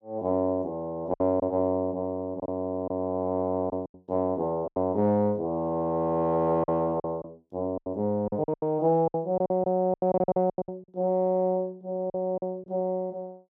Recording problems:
lost packets; 10% of the sound replaced, filled with silence

